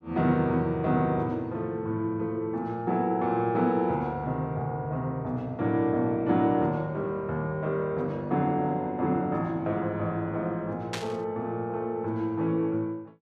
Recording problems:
burst of static; at 11 s; peak -1 dB vs average level

